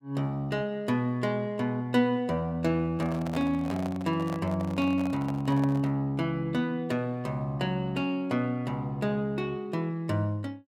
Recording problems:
handling noise; from 3 to 6 s; peak -5 dB vs average level

